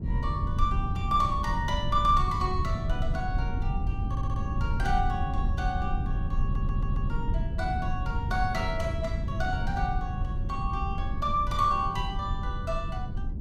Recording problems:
low-frequency rumble; below 110 Hz, SNR 0 dB
stutter; at 4 s and at 6.5 s

